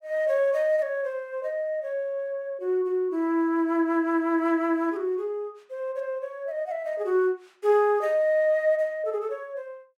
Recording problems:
none

